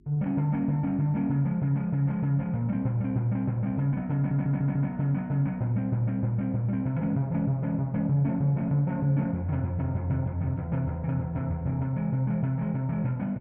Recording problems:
hum; 50 Hz, harmonics up to 400 Hz, SNR 28 dB
audio stuttering; at 4 s

